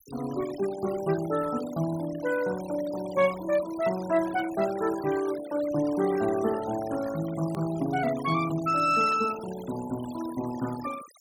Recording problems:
denoising artefacts; signal-to-artefact ratio 16 dB
edit click; at 7.5 s

